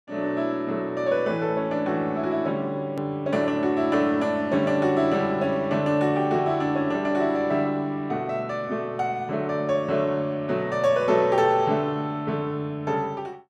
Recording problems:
hard cut with a click; at 3 s

